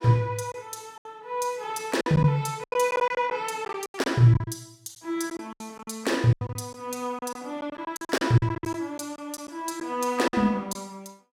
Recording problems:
lost packets; 12% of the sound replaced, filled with silence

